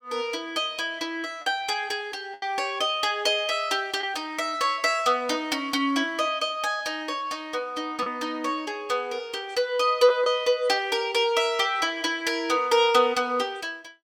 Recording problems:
packet loss; 1.4% of the sound replaced, filled with the last packet

